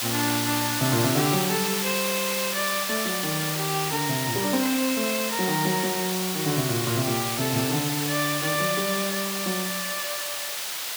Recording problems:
background hiss; SNR 0 dB

